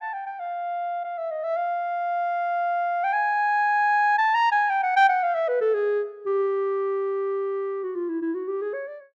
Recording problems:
none

